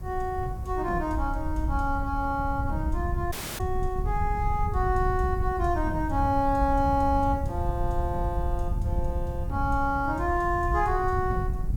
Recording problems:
hiss; SNR 23 dB
wind on the microphone; below 90 Hz, SNR 4 dB
audio cutting out; at 3.5 s

